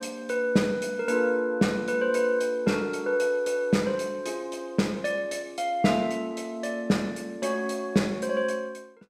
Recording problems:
none

